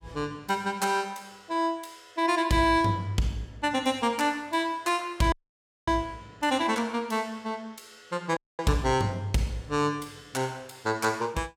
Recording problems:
dropout; at 5.5 s for 0.5 s and at 8.5 s

